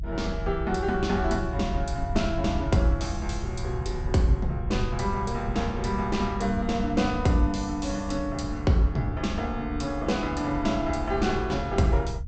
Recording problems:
treble cut off; nothing above 8 kHz
rumble; below 92 Hz, SNR 7 dB

